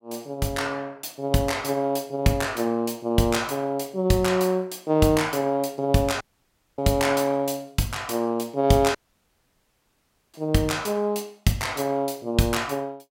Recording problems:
dropout; at 6 s for 0.5 s and at 9 s for 1.5 s

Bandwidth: 16 kHz